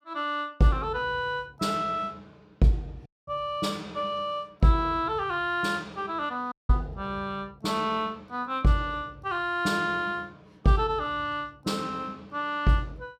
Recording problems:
audio cutting out; at 3 s and at 6.5 s

